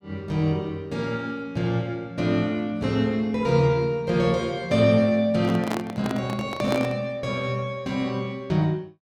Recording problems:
microphone handling noise; from 5.5 to 7 s; peak +1 dB vs average level

